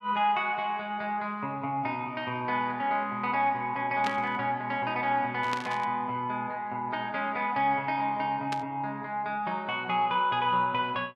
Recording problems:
static burst; at 4 s, at 5.5 s and at 8.5 s; peak -1 dB vs average level

